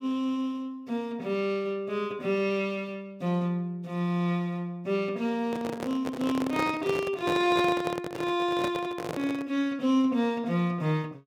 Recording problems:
microphone handling noise; from 5.5 to 9.5 s; peak +1 dB vs average level

